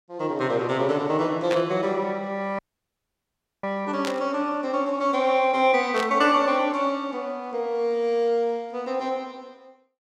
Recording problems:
burst of static; at 1.5 s, at 4 s and at 6 s; peak -2 dB vs average level
audio cutting out; at 2.5 s for 1 s

